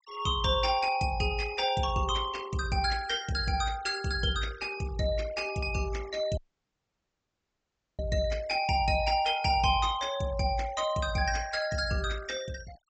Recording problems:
treble cut off; nothing above 8 kHz
denoising artefacts; signal-to-artefact ratio 19 dB
audio cutting out; at 6.5 s for 1.5 s

